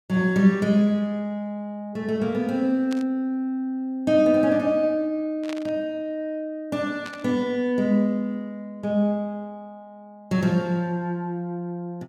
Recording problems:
burst of static; at 3 s, at 5.5 s and at 7 s; peak -10 dB vs average level

